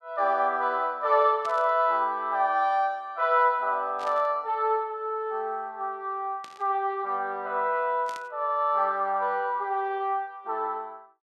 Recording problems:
burst of static; 4 times, first at 1.5 s; peak -13 dB vs average level

